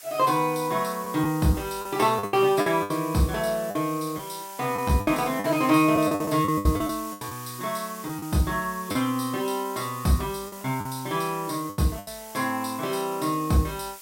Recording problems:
background hiss; slope +2 dB per octave, SNR 15 dB
lost packets; 8% of the sound replaced, filled with the last packet

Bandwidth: 16 kHz